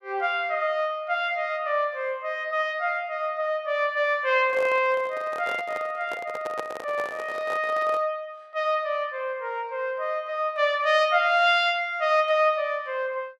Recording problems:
handling noise; from 4.5 to 8 s; peak -4 dB vs average level

